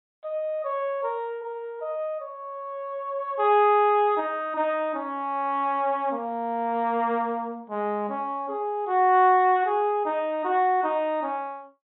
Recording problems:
treble missing; nothing above 3.9 kHz

